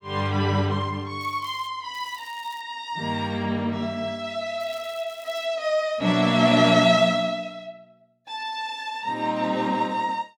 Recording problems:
crackle; at 1 s, at 2 s and at 4.5 s; loose cable, SNR 26 dB

